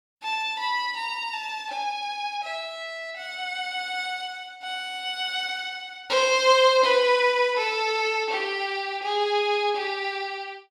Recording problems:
none

